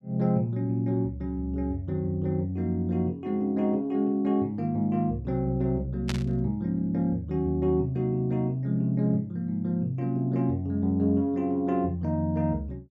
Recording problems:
burst of static; at 6 s; peak -2 dB vs average level

